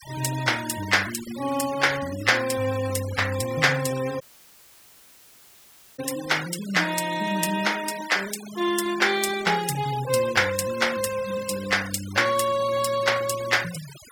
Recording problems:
noise reduction artefacts; signal-to-artefact ratio 13 dB
audio cutting out; at 4 s for 2 s

